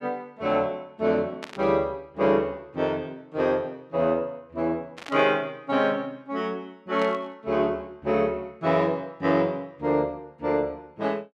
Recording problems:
burst of static; at 1.5 s, at 5 s and at 7 s; peak -6 dB vs average level

